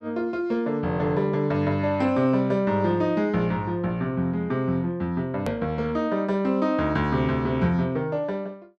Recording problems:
edit click; at 5.5 s

